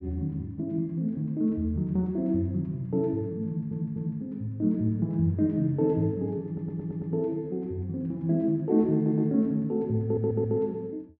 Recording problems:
stutter; 4 times, first at 3.5 s

